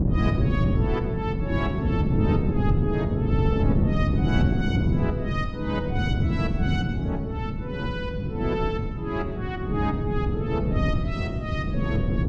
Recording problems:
wind noise; below 210 Hz, SNR -5 dB

